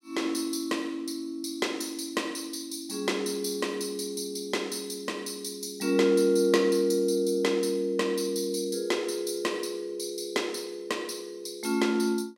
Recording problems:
none

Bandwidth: 16 kHz